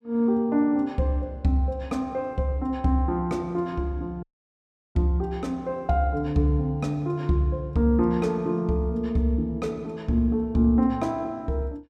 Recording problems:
audio cutting out; at 4 s for 0.5 s

